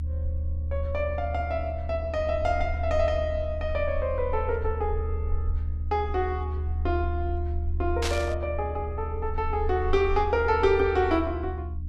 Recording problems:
hum; 60 Hz, harmonics up to 300 Hz, SNR 17 dB
rumble; below 78 Hz, strongest tone 76 Hz, SNR 4 dB
burst of static; at 8 s; peak +2 dB vs average level

